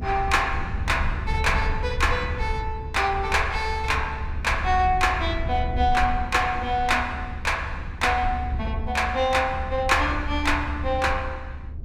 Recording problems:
low-frequency rumble; below 76 Hz, SNR 7 dB

